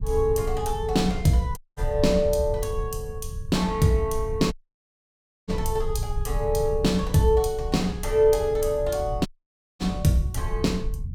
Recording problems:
rumble; below 88 Hz, SNR 8 dB
audio cutting out; at 1.5 s, at 4.5 s for 1 s and at 9.5 s for 0.5 s

